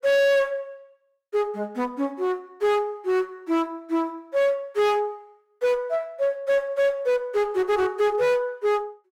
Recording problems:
distorted audio; hard clipping, signal-to-distortion ratio 8 dB

